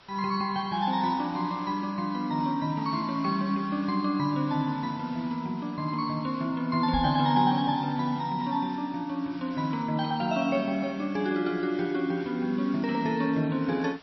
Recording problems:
lossy compression; MP3, log-spectral distance 3 dB
hiss; slope -2 dB per octave, SNR 22 dB
knock on the microphone; at 7 s; peak -2 dB vs average level

